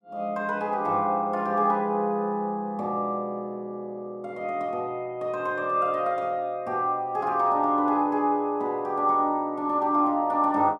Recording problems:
none

